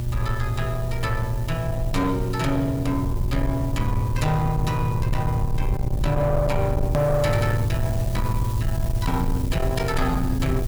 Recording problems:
distorted audio; soft clipping, signal-to-distortion ratio 11 dB
hum; 60 Hz, harmonics up to 600 Hz, SNR 4 dB
background hiss; slope +1 dB per octave, SNR 17 dB
low-frequency rumble; below 82 Hz, SNR 4 dB
edit click; at 7 s

